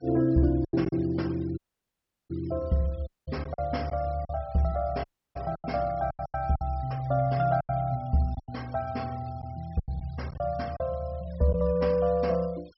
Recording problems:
treble cut off; nothing above 5.6 kHz
noise reduction artefacts; signal-to-artefact ratio 25 dB
lost packets; 8% of the sound replaced, filled with silence
audio cutting out; at 1.5 s for 0.5 s, at 3 s and at 5 s

